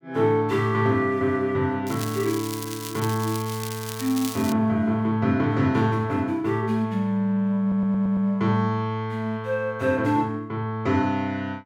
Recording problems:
crackling; from 2 to 4.5 s; loose cable, SNR 11 dB
stutter; at 7.5 s

